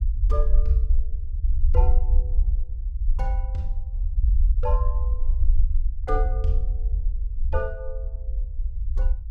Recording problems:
low-frequency rumble; below 56 Hz, SNR -7 dB

